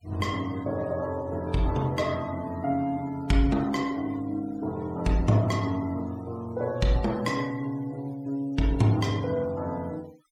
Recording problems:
noise reduction artefacts; signal-to-artefact ratio 22 dB

